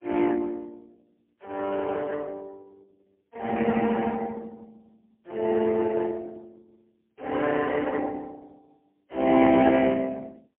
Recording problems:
telephone audio; 220 Hz to 3.3 kHz, AMR-NB, then MP3

